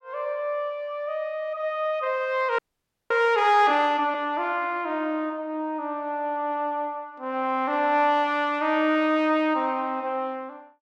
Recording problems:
frozen audio; at 2.5 s for 0.5 s

